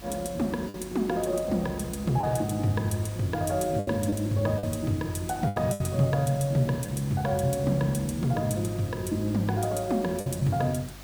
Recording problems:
hum; 50 Hz, harmonics up to 350 Hz, SNR 20 dB
hiss; SNR 19 dB
lost packets; 4% of the sound replaced, filled with the last packet

